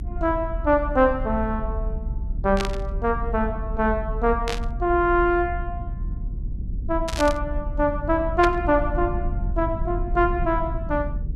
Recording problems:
rumble; below 68 Hz, strongest tone 38 Hz, SNR 7 dB
burst of static; 4 times, first at 2.5 s; peak 0 dB vs average level

